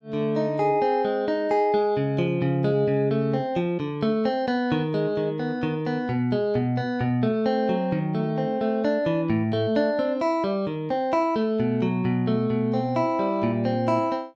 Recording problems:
none

